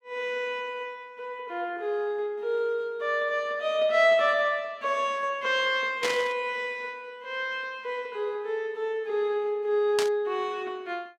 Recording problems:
static burst; at 6 s and at 10 s; peak +2 dB vs average level

